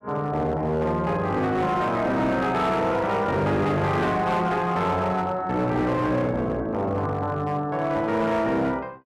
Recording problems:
distorted audio; hard clipping, signal-to-distortion ratio 11 dB

